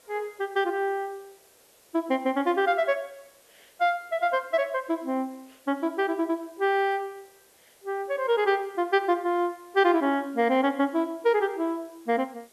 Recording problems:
hiss; SNR 30 dB

